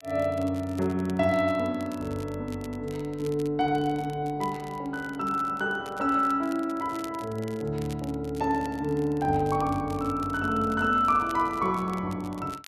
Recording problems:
crackle; vinyl, SNR 23 dB

